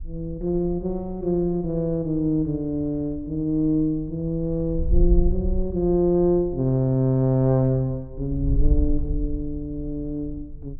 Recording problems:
wind noise; below 56 Hz, SNR 7 dB

